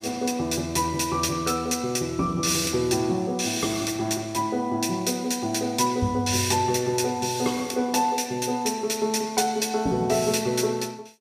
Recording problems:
none

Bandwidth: 15 kHz